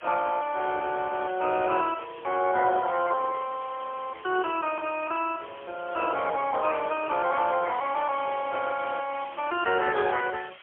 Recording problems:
telephone audio; 340 Hz to 3.5 kHz, AMR-NB, then MP3
background hiss; SNR 20 dB

